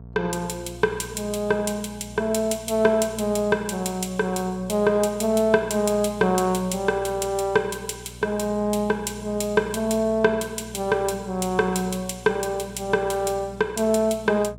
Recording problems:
hum; 60 Hz, harmonics up to 720 Hz, SNR 18 dB

